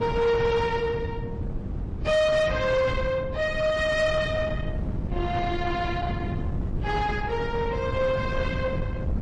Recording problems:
lossy compression; AAC, then MP3, log-spectral distance 2 dB, nothing above 10.1 kHz
distorted audio; soft clipping, signal-to-distortion ratio 11 dB
wind noise; below 220 Hz, SNR 6 dB

